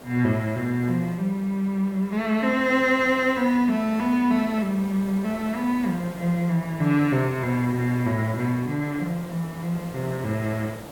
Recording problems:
background hiss; slope -7 dB per octave, SNR 17 dB

